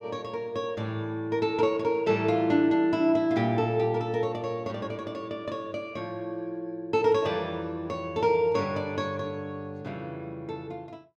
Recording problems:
none

